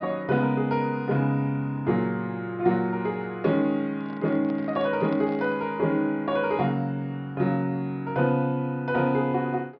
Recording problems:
treble cut off; nothing above 5.5 kHz
handling noise; from 4 to 5.5 s; peak -12 dB vs average level

